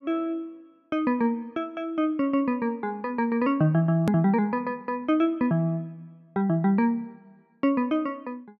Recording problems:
click at an edit; at 4 s

